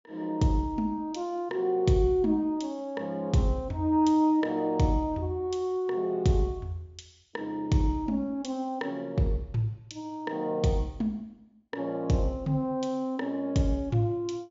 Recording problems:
low-pass filter; nothing above 7.2 kHz

